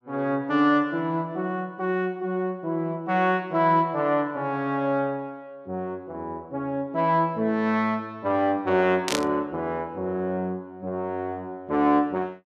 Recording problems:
static burst; at 9 s; peak +3 dB vs average level

